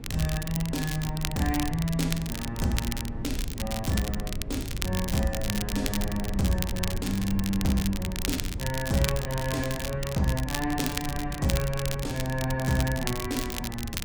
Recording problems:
low-frequency rumble; below 130 Hz, SNR 7 dB
crackle; vinyl, SNR 6 dB

